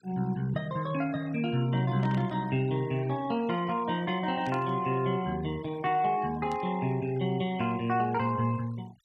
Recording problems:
denoising artefacts; signal-to-artefact ratio 23 dB
static burst; at 2 s, at 4.5 s and at 6.5 s; peak -13 dB vs average level

